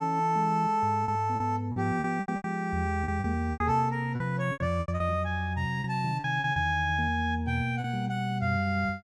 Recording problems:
packet loss; 10% of the sound replaced, filled with repeated pitch periods

